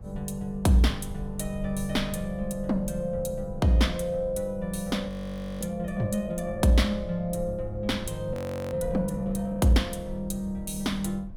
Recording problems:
low-frequency rumble; below 94 Hz, SNR 14 dB
audio freezing; at 5 s for 0.5 s and at 8.5 s

